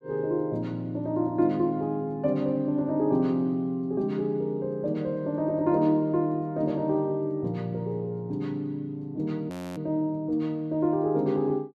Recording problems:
audio freezing; at 9.5 s

